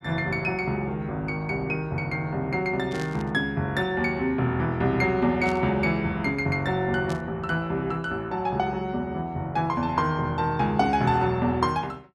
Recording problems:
burst of static; at 3 s, at 5.5 s and at 7 s; peak -10 dB vs average level

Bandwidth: 12.5 kHz